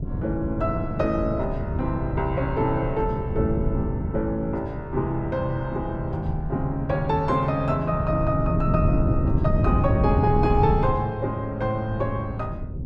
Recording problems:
wind on the microphone; below 180 Hz, SNR 2 dB

